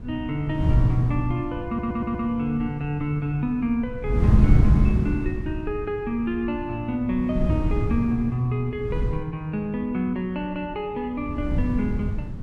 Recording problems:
wind noise; below 140 Hz, SNR -1 dB
stutter; at 1.5 s

